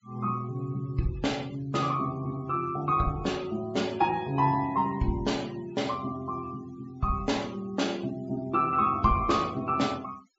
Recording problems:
low-pass filter; nothing above 8 kHz
noise reduction artefacts; signal-to-artefact ratio 23 dB

